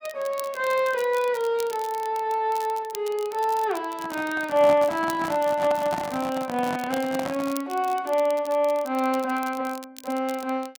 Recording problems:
crackling; vinyl, SNR 18 dB
microphone handling noise; from 4 to 7.5 s; peak -2 dB vs average level

